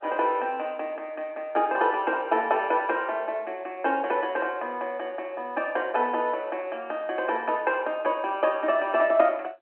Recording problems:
telephone audio; 240 Hz to 3.1 kHz, G.711

